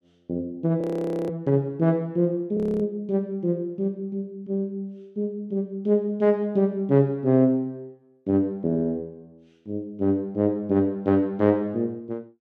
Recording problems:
frozen audio; at 1 s and at 2.5 s

